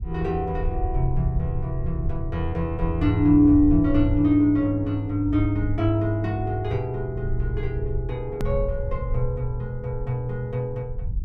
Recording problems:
low-frequency rumble; below 72 Hz, SNR 9 dB
click at an edit; at 8.5 s

